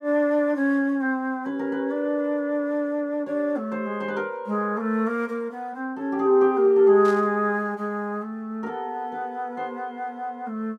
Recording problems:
static burst; at 7 s; peak -14 dB vs average level

